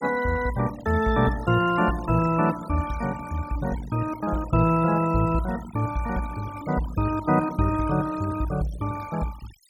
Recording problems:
noise reduction artefacts; signal-to-artefact ratio 16 dB

